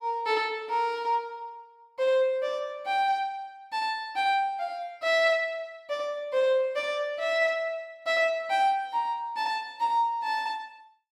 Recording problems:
none

